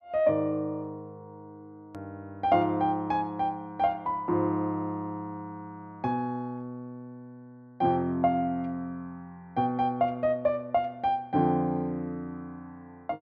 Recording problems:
click at an edit; at 2 s

